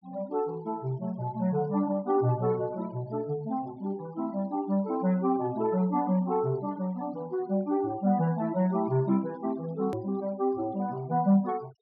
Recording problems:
treble cut off; nothing above 5.5 kHz
noise reduction artefacts; signal-to-artefact ratio 27 dB
click at an edit; at 10 s

